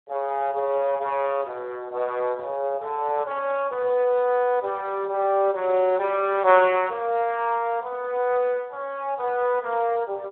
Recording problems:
phone line; 340 Hz to 3.5 kHz, Speex

